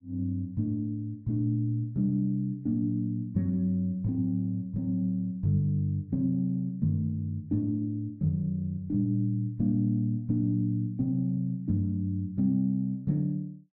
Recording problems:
none

